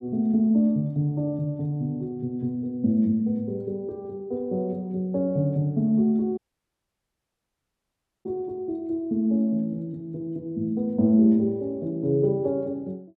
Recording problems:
dropout; at 6.5 s for 2 s

